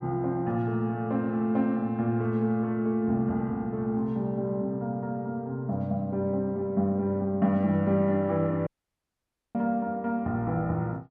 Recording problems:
audio cutting out; at 8.5 s for 1 s

